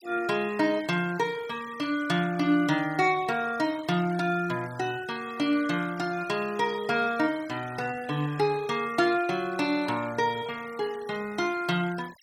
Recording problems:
denoising artefacts; signal-to-artefact ratio 19 dB

